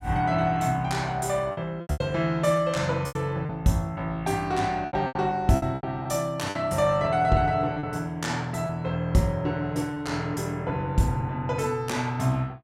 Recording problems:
packet loss; 7% of the sound replaced, filled with repeated pitch periods

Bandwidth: 16 kHz